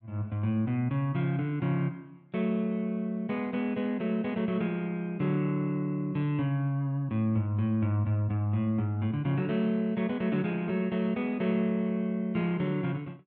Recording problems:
none

